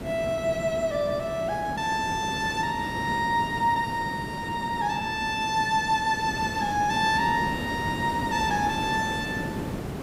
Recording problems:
background hiss; slope -8 dB per octave, SNR 8 dB

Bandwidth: 15.5 kHz